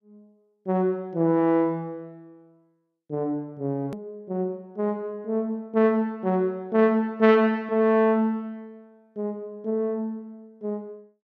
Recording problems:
hard cut with a click; at 4 s

